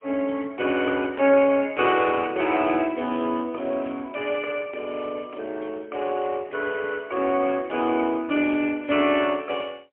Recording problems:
phone line; 240 Hz to 3.2 kHz, AMR-NB, then MP3

